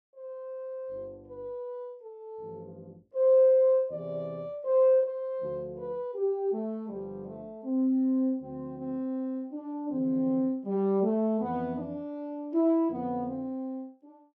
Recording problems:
none

